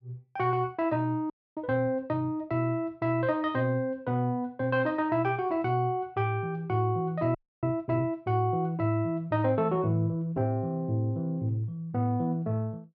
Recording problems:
audio freezing; at 1.5 s and at 7.5 s

